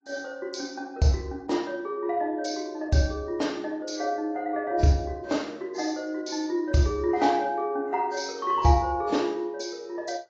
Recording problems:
lossy compression; AAC, log-spectral distance 4 dB, nothing above 6.3 kHz

